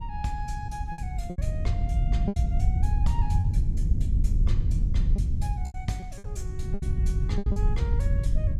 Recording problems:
wind noise; below 92 Hz, SNR -12 dB
packet loss; 8% of the sound replaced, filled with repeated pitch periods

